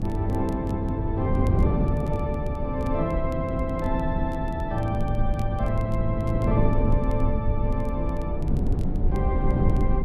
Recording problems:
mains hum; 50 Hz, harmonics up to 300 Hz, SNR 17 dB
rumble; below 54 Hz, SNR 4 dB
wind noise; below 230 Hz, SNR 1 dB
crackling; vinyl, SNR 28 dB

